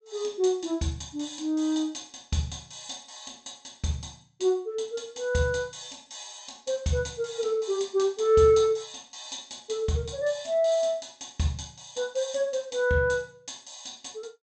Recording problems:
treble missing; nothing above 8 kHz

